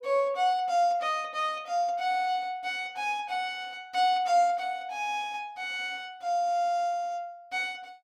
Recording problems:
none

